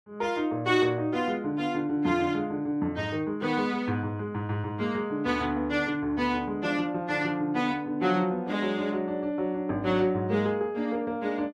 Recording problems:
none

